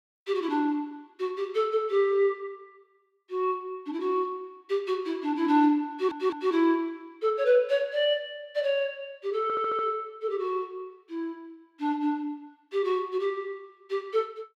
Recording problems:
audio stuttering; at 6 s and at 9.5 s

